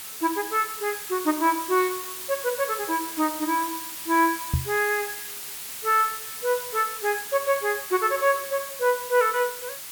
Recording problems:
hiss; slope +2 dB per octave, SNR 8 dB
knock on the microphone; at 4.5 s; peak +4 dB vs average level

